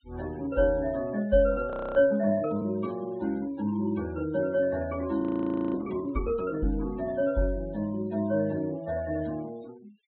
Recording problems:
low-pass filter; nothing above 4 kHz
denoising artefacts; signal-to-artefact ratio 24 dB
frozen audio; at 1.5 s and at 5 s for 0.5 s

